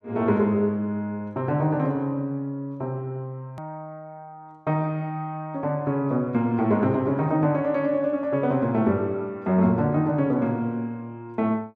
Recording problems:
click at an edit; at 3.5 s

